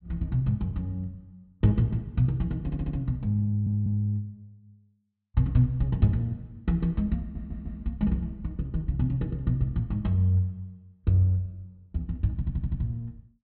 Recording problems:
low-pass filter; nothing above 4.2 kHz
audio stuttering; 4 times, first at 2.5 s

